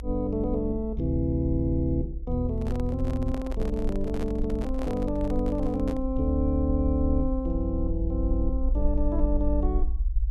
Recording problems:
low-frequency rumble; below 56 Hz, SNR 4 dB
handling noise; from 2.5 to 6 s; peak -6 dB vs average level

